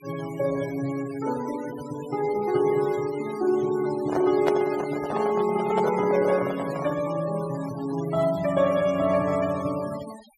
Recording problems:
denoising artefacts; signal-to-artefact ratio 17 dB
microphone handling noise; from 4 to 7 s; peak +3 dB vs average level

